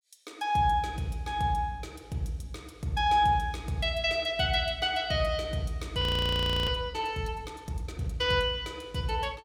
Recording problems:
frozen audio; at 6 s for 0.5 s

